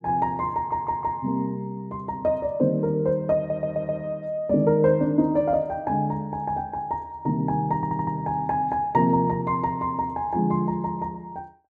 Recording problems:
audio stuttering; at 0.5 s, at 3.5 s and at 8 s

